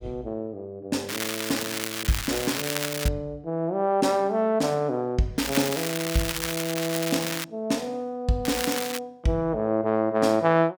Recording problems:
crackle; from 1 to 3 s, from 5.5 to 7.5 s and at 8.5 s; loose cable, SNR 3 dB

